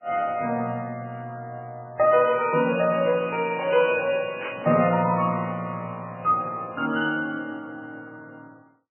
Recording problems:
lossy codec; MP3, log-spectral distance 3 dB, nothing above 2.5 kHz
burst of static; at 4.5 s; peak -7 dB vs average level

